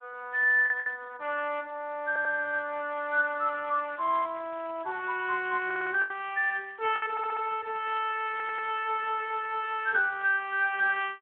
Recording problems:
phone line; 340 Hz to 3.5 kHz, Speex
packet loss; 2% of the sound replaced, filled with the last packet
audio stuttering; 4 times, first at 2 s
crackle; from 3 to 7 s and from 7 to 10 s; loose cable, SNR 26 dB

